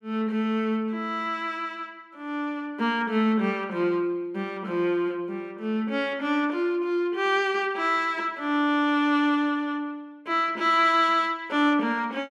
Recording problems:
none

